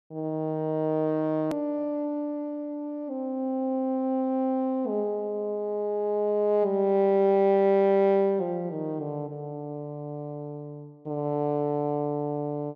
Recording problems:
edit click; at 1.5 s

